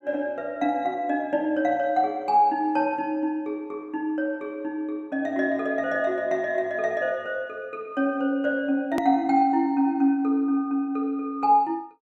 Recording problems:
hard cut with a click; at 9 s

